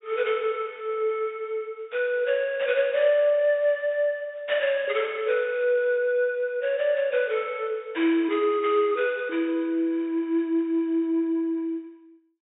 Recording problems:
low-pass filter; nothing above 4 kHz

